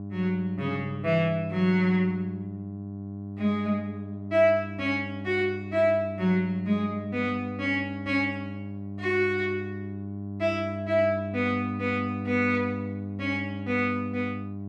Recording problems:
electrical hum; 50 Hz, harmonics up to 800 Hz, SNR 9 dB

